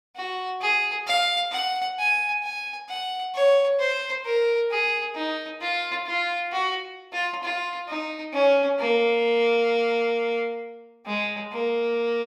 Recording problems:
none

